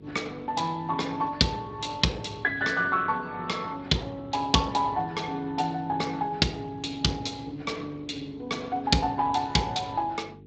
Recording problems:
lossy compression; Speex, log-spectral distance 4 dB, nothing above 7.6 kHz
hum; 50 Hz, harmonics up to 450 Hz, SNR 21 dB

